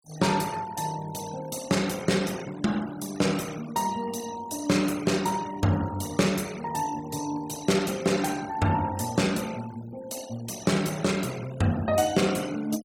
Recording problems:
noise reduction artefacts; signal-to-artefact ratio 16 dB

